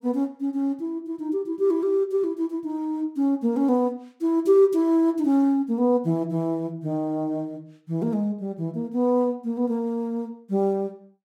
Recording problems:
none

